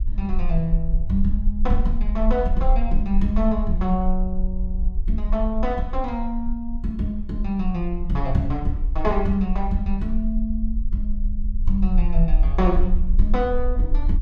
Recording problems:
low-frequency rumble; below 42 Hz, strongest tone 20 Hz, SNR 1 dB

